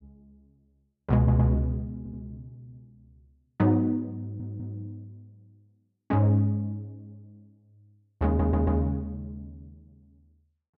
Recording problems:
audio stuttering; 4 times, first at 1 s

